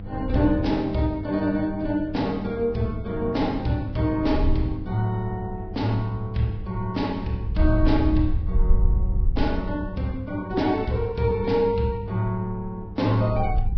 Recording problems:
lossy codec; Vorbis, log-spectral distance 2 dB, nothing above 5.3 kHz
hum; 50 Hz, harmonics up to 800 Hz, SNR 15 dB
wind noise; below 66 Hz, SNR 6 dB

